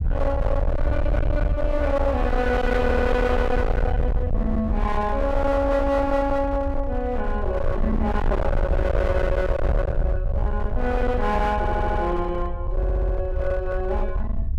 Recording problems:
distortion; hard clipping, signal-to-distortion ratio 7 dB
rumble; below 82 Hz, SNR 2 dB
stutter; at 3 s, at 12 s and at 13 s

